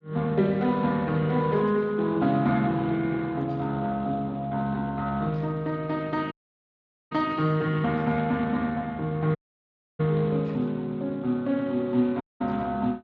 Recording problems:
lossy codec; Speex, log-spectral distance 2 dB
dropout; at 6.5 s for 1 s, at 9.5 s for 0.5 s and at 12 s

